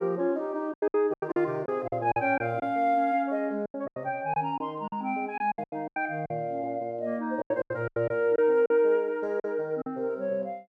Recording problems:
lost packets; 12% of the sound replaced, filled with silence

